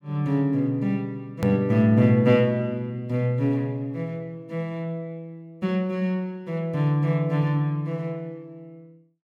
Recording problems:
click at an edit; at 1.5 s

